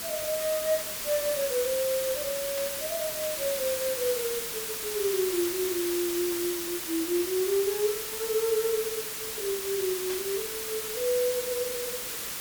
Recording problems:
hiss; slope 0 dB per octave, SNR 2 dB
burst of static; at 2.5 s and at 10 s; peak -7 dB vs average level

